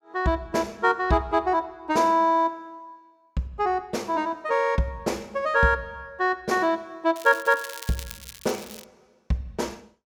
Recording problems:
crackling; from 7 to 9 s; loose cable, SNR 16 dB

